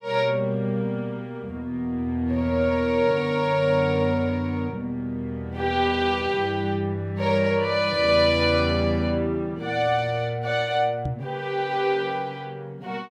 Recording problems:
microphone bump; at 11 s; peak -1 dB vs average level

